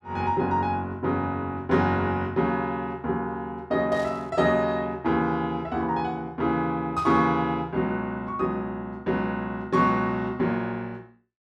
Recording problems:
burst of static; at 4 s and at 7 s; peak -15 dB vs average level

